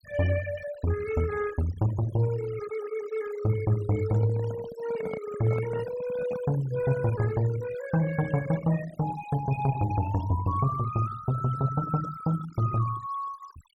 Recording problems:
noise reduction artefacts; signal-to-artefact ratio 16 dB
microphone handling noise; from 4 to 6.5 s; peak -5 dB vs average level

